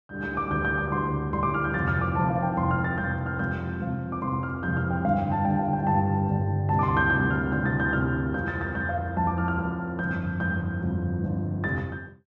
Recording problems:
none

